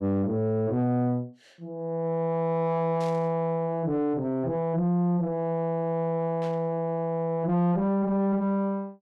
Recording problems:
distortion; soft clipping, signal-to-distortion ratio 10 dB
burst of static; at 3 s and at 6.5 s; peak -15 dB vs average level

